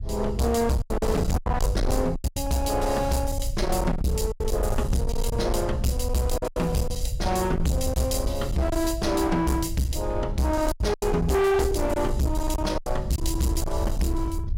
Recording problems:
distorted audio; hard clipping, signal-to-distortion ratio 8 dB
low-frequency rumble; below 84 Hz, SNR 5 dB
packet loss; 7% of the sound replaced, filled with silence

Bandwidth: 16 kHz